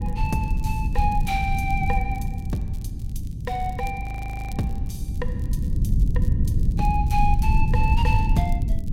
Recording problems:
low-frequency rumble; below 100 Hz, SNR -3 dB
crackle; vinyl, SNR 24 dB
audio freezing; at 4 s

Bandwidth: 16 kHz